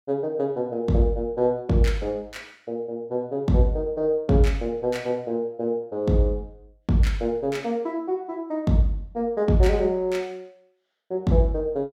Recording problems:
none

